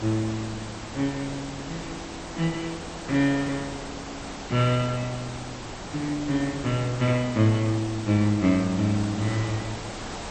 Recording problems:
lossy codec; MP2, log-spectral distance 8 dB
background hiss; slope -4 dB per octave, SNR 10 dB

